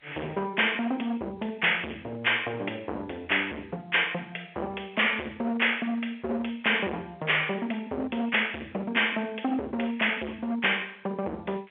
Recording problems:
telephone audio; 300 Hz to 3.2 kHz, G.711
distorted audio; hard clipping, signal-to-distortion ratio 7 dB

